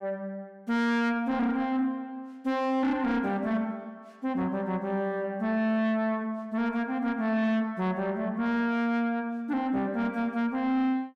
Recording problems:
distortion; soft clipping, signal-to-distortion ratio 12 dB

